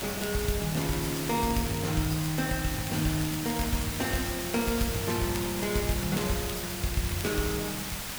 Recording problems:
background hiss; slope -1 dB per octave, SNR 4 dB
crackle; vinyl, SNR 17 dB

